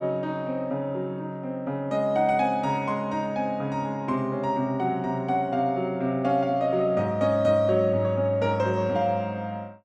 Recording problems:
none

